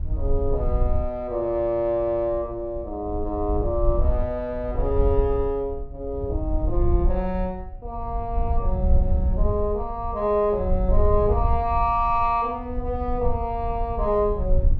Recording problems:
wind noise; below 68 Hz, SNR 2 dB

